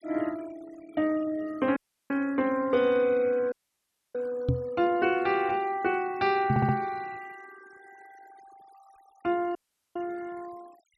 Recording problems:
noise reduction artefacts; signal-to-artefact ratio 24 dB
audio cutting out; at 2 s, at 3.5 s for 0.5 s and at 9.5 s
microphone thump; at 4.5 s and at 6.5 s; peak +6 dB vs average level
stutter; at 6.5 s

